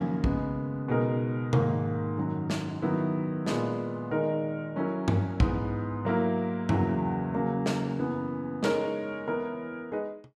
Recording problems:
none

